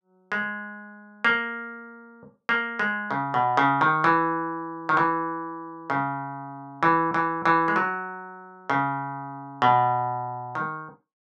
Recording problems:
none

